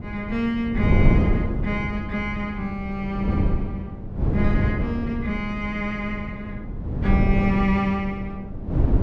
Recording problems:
wind on the microphone; below 190 Hz, SNR 0 dB

